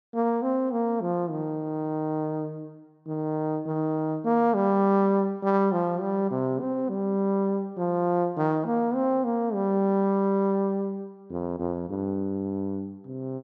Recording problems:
none

